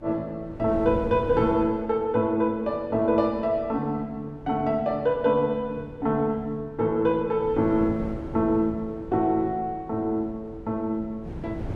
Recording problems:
wind noise; below 300 Hz, SNR 15 dB

